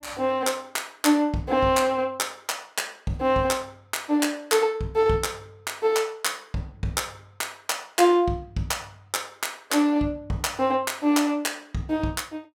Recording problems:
none

